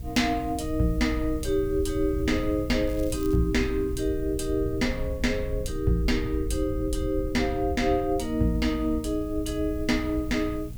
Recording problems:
hum; 60 Hz, harmonics up to 480 Hz, SNR 14 dB
hiss; slope +2 dB per octave, SNR 26 dB
wind noise; below 80 Hz, SNR 9 dB
crackling; at 3 s; loose cable, SNR 22 dB

